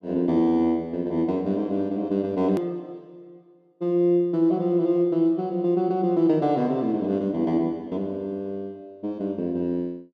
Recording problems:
hard cut with a click; at 2.5 s

